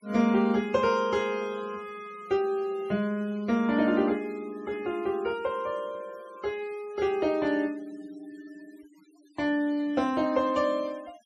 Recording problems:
noise reduction artefacts; signal-to-artefact ratio 26 dB

